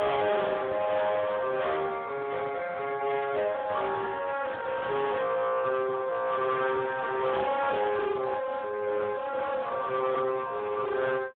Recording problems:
telephone audio; 280 Hz to 2.1 kHz, Speex
distortion; soft clipping, signal-to-distortion ratio 6 dB

